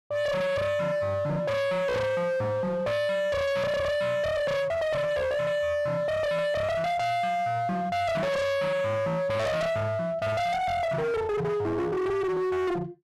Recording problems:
distortion; hard clipping, signal-to-distortion ratio 6 dB

